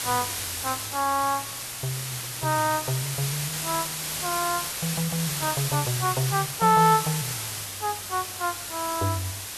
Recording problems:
hiss; slope 0 dB per octave, SNR 3 dB

